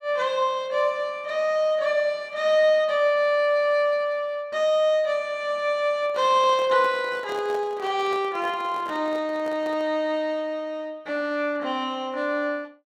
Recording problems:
microphone handling noise; from 6 to 10 s; peak -10 dB vs average level

